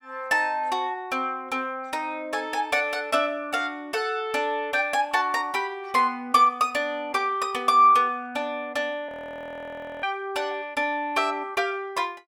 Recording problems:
audio freezing; at 9 s for 1 s

